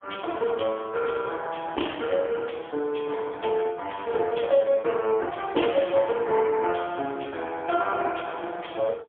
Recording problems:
phone line; 240 Hz to 3.2 kHz, AMR-NB, then MP3

